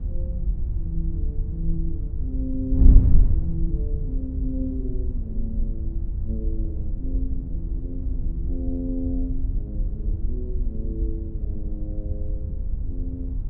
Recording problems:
wind on the microphone; below 66 Hz, SNR -8 dB

